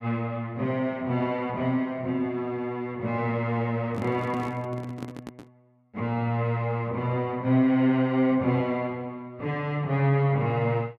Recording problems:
microphone handling noise; from 4 to 5.5 s; peak -7 dB vs average level

